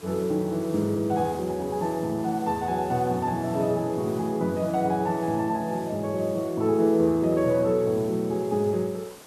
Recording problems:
background hiss; slope -3 dB per octave, SNR 21 dB

